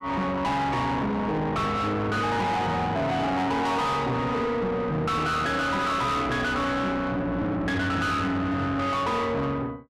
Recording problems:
distortion; soft clipping, signal-to-distortion ratio 5 dB

